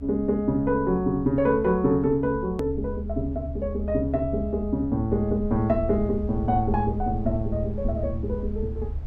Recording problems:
rumble; below 74 Hz, strongest tone 72 Hz, SNR 9 dB
click at an edit; at 2.5 s

